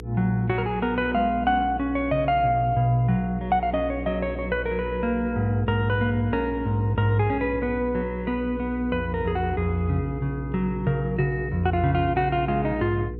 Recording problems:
hum; 60 Hz, harmonics up to 480 Hz, SNR 11 dB

